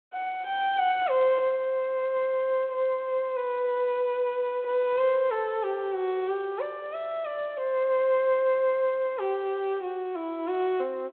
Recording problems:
telephone audio; 280 Hz to 3.7 kHz, G.726

